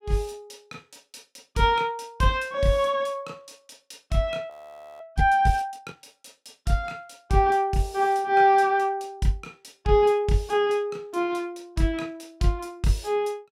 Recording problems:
frozen audio; at 4.5 s for 0.5 s

